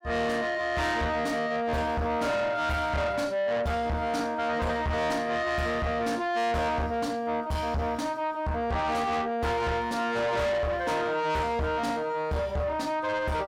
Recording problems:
distortion; soft clipping, signal-to-distortion ratio 7 dB

